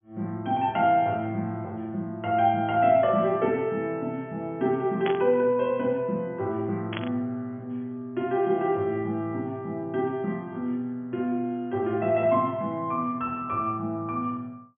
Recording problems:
treble missing; nothing above 3.4 kHz
static burst; at 5 s and at 7 s; peak -2 dB vs average level

